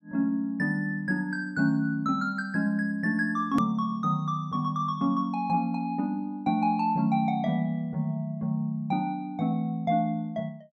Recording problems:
click at an edit; at 3.5 s

